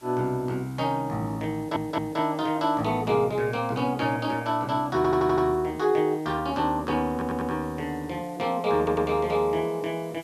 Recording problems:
hiss; slope -1 dB per octave, SNR 26 dB
stutter; 4 times, first at 1.5 s

